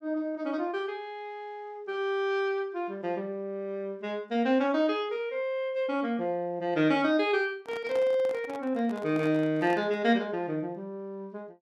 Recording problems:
handling noise; from 7.5 to 10 s; peak -8 dB vs average level

